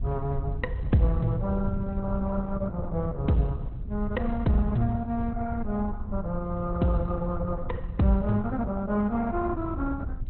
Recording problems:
codec artefacts; Opus, log-spectral distance 2 dB, nothing above 4 kHz
wind on the microphone; below 96 Hz, SNR 6 dB

